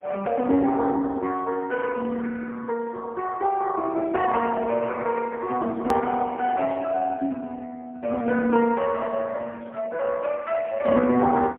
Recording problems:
telephone audio; 65 Hz to 2.6 kHz, AMR-NB, then MP3
hard cut with a click; at 6 s

